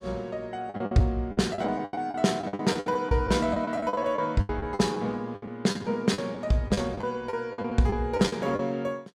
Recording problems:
packet loss; 16% of the sound replaced, filled with the last packet

